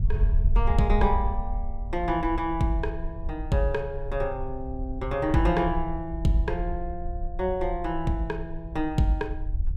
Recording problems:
wind on the microphone; below 60 Hz, SNR 5 dB

